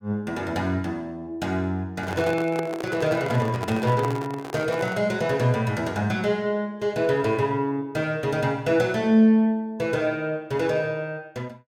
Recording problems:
microphone handling noise; from 2 to 5 s; peak -2 dB vs average level

